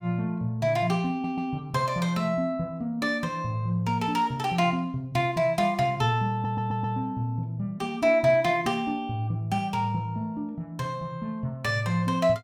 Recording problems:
stutter; at 1 s and at 6.5 s

